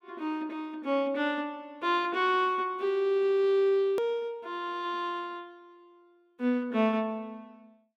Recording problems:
hard cut with a click; at 4 s

